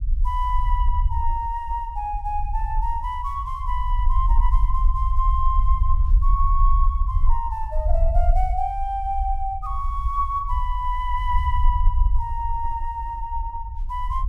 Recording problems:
low-frequency rumble; below 52 Hz, SNR -2 dB

